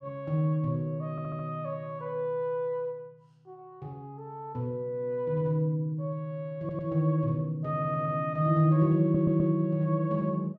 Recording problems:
audio stuttering; 4 times, first at 1 s

